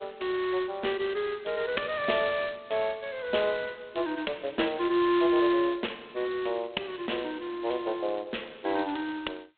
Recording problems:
telephone audio; 260 Hz to 3.8 kHz, G.726

